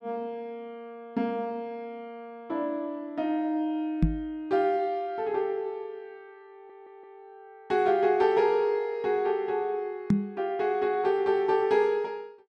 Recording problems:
microphone bump; at 4 s and at 10 s; peak +8 dB vs average level
stutter; at 6.5 s

